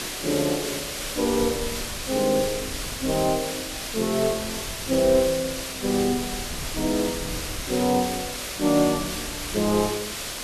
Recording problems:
background hiss; SNR 5 dB
wind noise; below 160 Hz, SNR 16 dB

